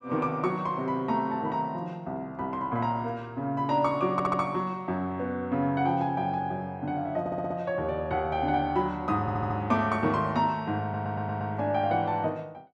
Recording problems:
audio stuttering; 4 times, first at 4 s

